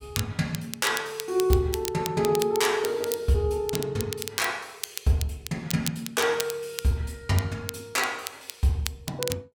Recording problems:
crackle; vinyl, SNR 9 dB

